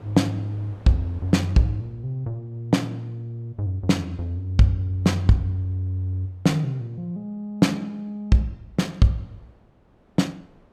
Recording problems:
wind on the microphone; below 600 Hz, SNR 28 dB

